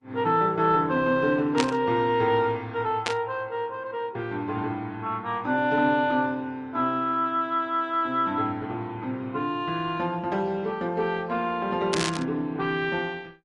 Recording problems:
lossy compression; MP3, then Opus, log-spectral distance 2 dB
burst of static; at 1.5 s, at 3 s and at 12 s; peak +3 dB vs average level

